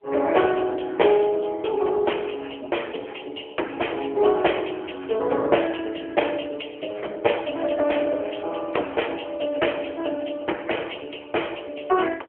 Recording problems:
telephone audio; 300 Hz to 3.3 kHz, AMR-NB

